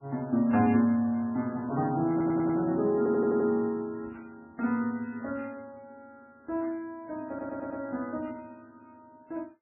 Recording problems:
lossy compression; MP3, log-spectral distance 2 dB, nothing above 2.4 kHz
stutter; at 2 s, at 3 s and at 7.5 s

